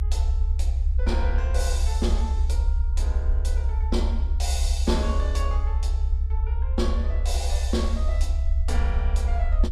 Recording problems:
low-frequency rumble; below 70 Hz, SNR -7 dB

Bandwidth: 14.5 kHz